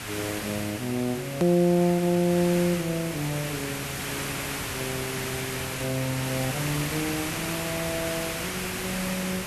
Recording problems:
hiss; SNR 3 dB
edit click; at 1.5 s

